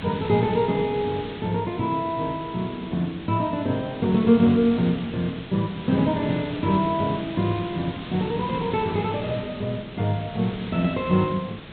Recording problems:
treble missing; nothing above 4 kHz
hiss; SNR 13 dB

